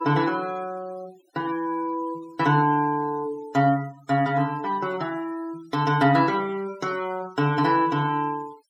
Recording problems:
noise reduction artefacts; signal-to-artefact ratio 23 dB

